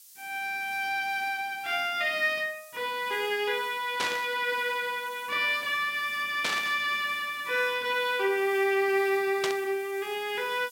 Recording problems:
background hiss; slope +7 dB per octave, SNR 21 dB
burst of static; at 4 s, at 6.5 s and at 9.5 s; peak +2 dB vs average level

